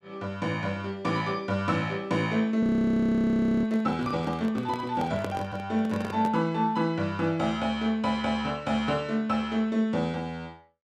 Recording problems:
microphone handling noise; from 2.5 to 6.5 s; peak -3 dB vs average level
frozen audio; at 2.5 s for 1 s

